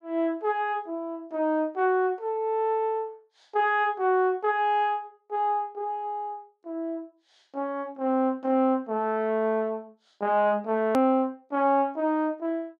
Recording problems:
edit click; at 11 s

